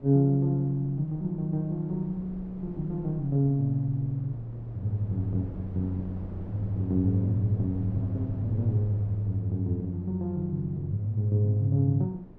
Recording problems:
wind on the microphone; below 310 Hz, SNR 16 dB

